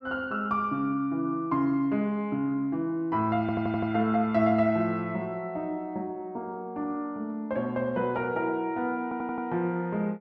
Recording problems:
audio stuttering; at 3.5 s and at 9 s

